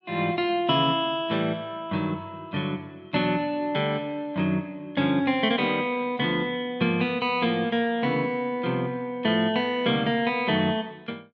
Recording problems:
none

